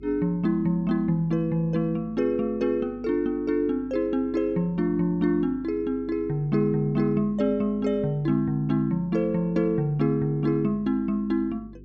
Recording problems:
electrical hum; 50 Hz, harmonics up to 400 Hz, SNR 22 dB

